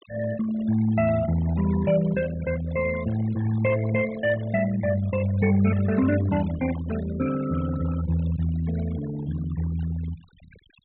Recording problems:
treble cut off; nothing above 4 kHz
denoising artefacts; signal-to-artefact ratio 15 dB

